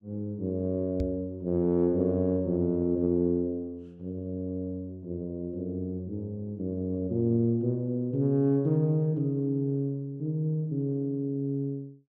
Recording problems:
microphone bump; at 1 s; peak -1 dB vs average level

